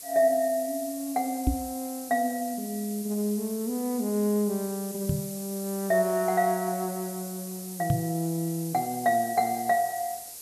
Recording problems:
hiss; SNR 11 dB
microphone bump; at 1.5 s, at 5 s and at 8 s; peak +7 dB vs average level

